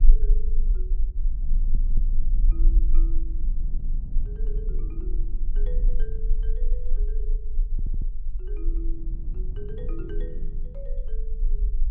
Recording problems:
low-frequency rumble; below 34 Hz, strongest tone 20 Hz, SNR -17 dB
wind on the microphone; below 140 Hz, SNR -3 dB
stutter; at 1.5 s and at 7.5 s

